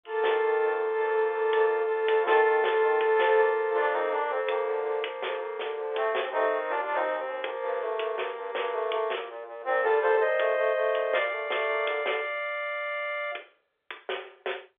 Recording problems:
telephone audio; 340 Hz to 3.6 kHz, G.711

